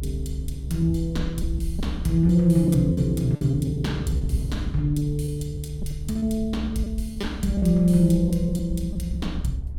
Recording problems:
low-frequency rumble; below 68 Hz, strongest tone 64 Hz, SNR 10 dB
wind noise; below 130 Hz, SNR 15 dB
packet loss; 9% of the sound replaced, filled with repeated pitch periods

